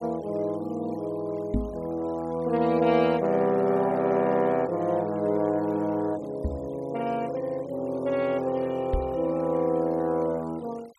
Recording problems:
denoising artefacts; signal-to-artefact ratio 26 dB
knock on the microphone; at 1.5 s, at 6.5 s and at 9 s; peak +3 dB vs average level

